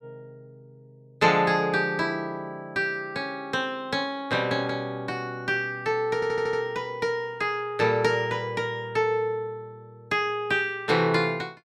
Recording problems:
audio stuttering; at 6 s

